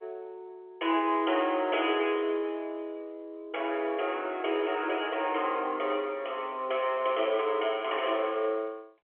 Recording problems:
phone line; 280 Hz to 3.4 kHz, G.711

